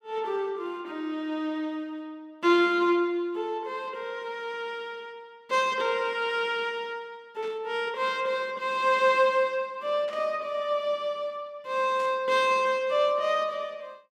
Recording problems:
static burst; at 7.5 s, at 10 s and at 12 s; peak -14 dB vs average level

